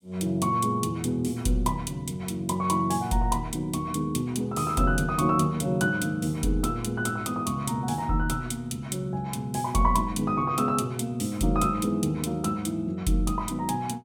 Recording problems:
none

